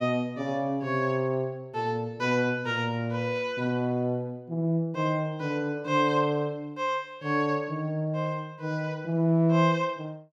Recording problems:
none

